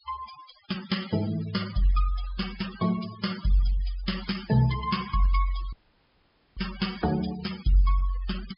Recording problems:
treble missing; nothing above 5.5 kHz
noise reduction artefacts; signal-to-artefact ratio 14 dB
dropout; at 5.5 s for 1 s

